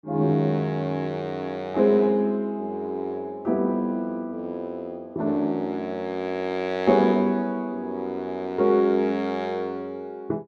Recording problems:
none

